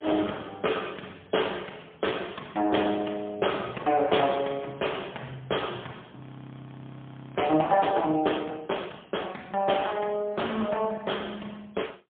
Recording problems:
phone line; 280 Hz to 3.5 kHz, AMR-NB, then MP3
frozen audio; at 6 s for 1 s

